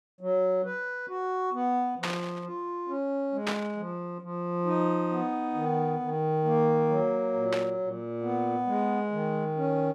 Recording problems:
burst of static; at 2 s, at 3.5 s and at 7.5 s; peak +2 dB vs average level

